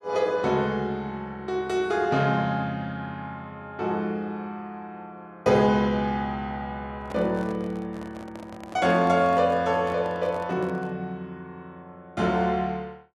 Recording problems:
microphone handling noise; from 7 to 11 s; peak -10 dB vs average level

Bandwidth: 12.5 kHz